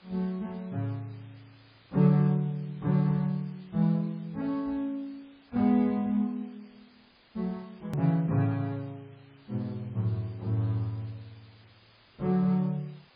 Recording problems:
lossy codec; MP3, log-spectral distance 8 dB, nothing above 17.7 kHz
background hiss; SNR 29 dB
click at an edit; at 8 s

